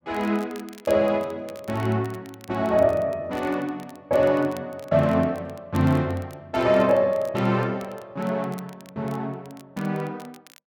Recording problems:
crackling; vinyl, SNR 26 dB

